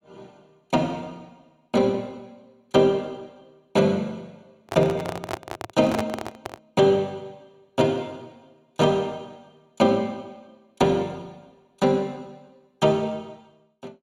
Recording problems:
handling noise; from 4.5 to 6.5 s; peak 0 dB vs average level

